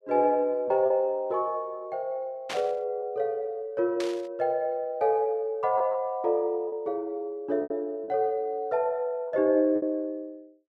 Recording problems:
packet loss; 4% of the sound replaced, filled with repeated pitch periods
static burst; at 2.5 s and at 4 s; peak -3 dB vs average level

